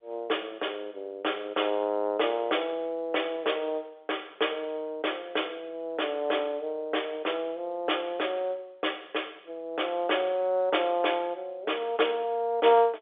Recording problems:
phone line; 340 Hz to 3.5 kHz, G.711

